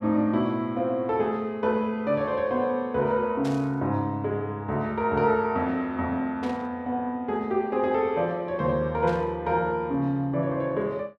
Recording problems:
burst of static; at 3.5 s, at 6.5 s and at 9 s; peak -11 dB vs average level

